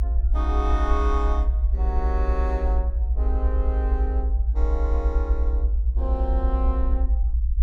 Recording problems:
low-frequency rumble; below 60 Hz, strongest tone 56 Hz, SNR -8 dB

